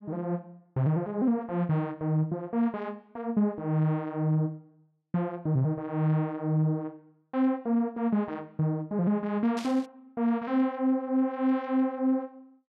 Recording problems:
burst of static; at 9.5 s; peak -8 dB vs average level

